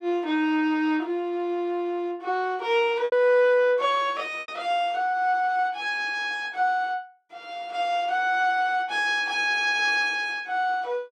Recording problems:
lost packets; 1.5% of the sound replaced, filled with repeated pitch periods

